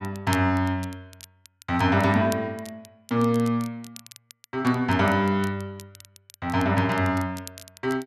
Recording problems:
crackling; vinyl, SNR 21 dB

